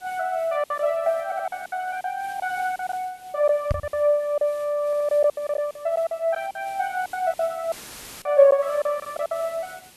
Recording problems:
hiss; SNR 24 dB
packet loss; 12% of the sound replaced, filled with silence
audio stuttering; at 1.5 s and at 5 s
microphone bump; at 3.5 s; peak +2 dB vs average level
audio cutting out; at 7.5 s for 0.5 s; filled with static

